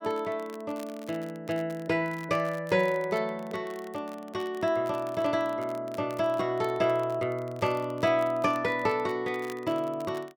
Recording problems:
crackling; vinyl, SNR 24 dB

